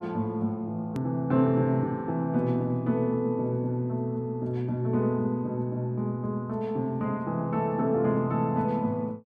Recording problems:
hard cut with a click; at 1 s

